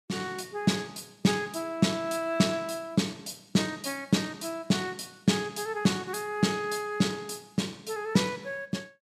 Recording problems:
none

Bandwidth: 15 kHz